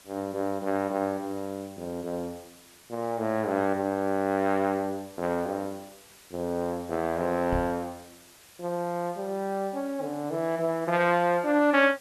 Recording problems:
background hiss; slope -1 dB per octave, SNR 23 dB
microphone bump; at 7.5 s; peak -1 dB vs average level

